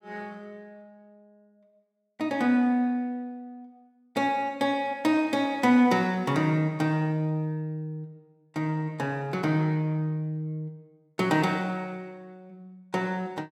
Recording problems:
none

